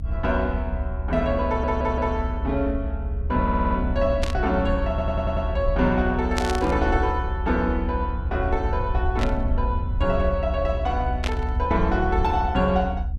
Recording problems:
electrical hum; 60 Hz, harmonics up to 540 Hz, SNR 16 dB
rumble; below 72 Hz, SNR 3 dB
audio stuttering; at 1.5 s, at 3.5 s and at 5 s
burst of static; 4 times, first at 4 s; peak +1 dB vs average level

